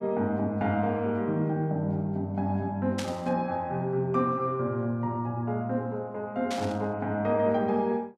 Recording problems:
static burst; at 3 s and at 6.5 s; peak -3 dB vs average level

